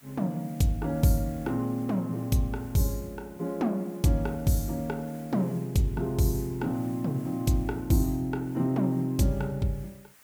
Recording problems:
hiss; SNR 24 dB

